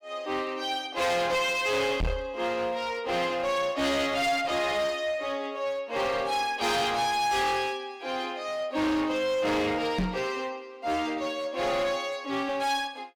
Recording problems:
distorted audio; hard clipping, uneven, signal-to-distortion ratio 7 dB
microphone bump; at 2 s and at 10 s; peak +2 dB vs average level

